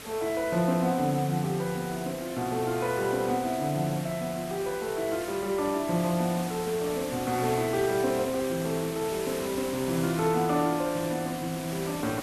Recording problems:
hiss; slope -2 dB per octave, SNR 11 dB

